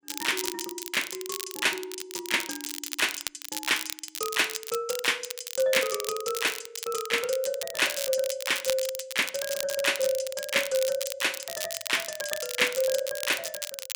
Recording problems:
crackle; vinyl, SNR 6 dB

